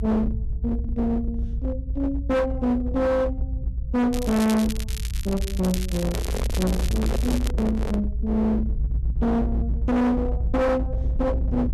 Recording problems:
distorted audio; hard clipping, signal-to-distortion ratio 7 dB
rumble; below 66 Hz, strongest tone 58 Hz, SNR 3 dB
crackle; from 4 to 7.5 s; loose cable, SNR 12 dB
microphone handling noise; from 6 to 8 s; peak +1 dB vs average level

